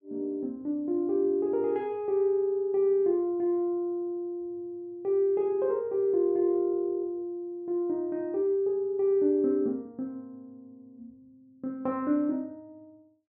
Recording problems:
none

